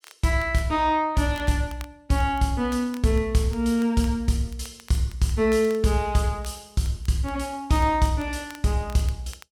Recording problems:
crackle; vinyl, SNR 26 dB

